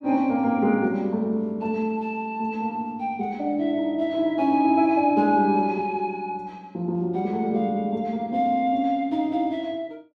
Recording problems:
none

